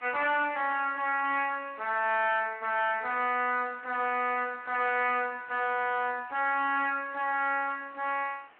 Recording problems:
telephone audio; 240 Hz to 3.5 kHz, Speex
distorted audio; hard clipping, uneven, signal-to-distortion ratio 11 dB
hiss; SNR 27 dB

